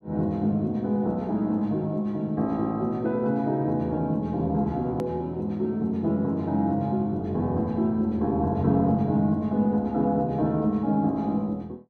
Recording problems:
edit click; at 5 s

